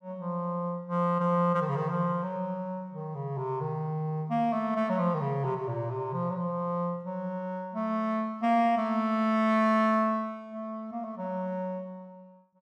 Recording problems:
none

